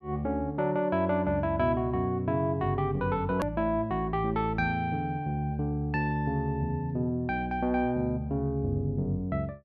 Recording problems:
edit click; at 3.5 s

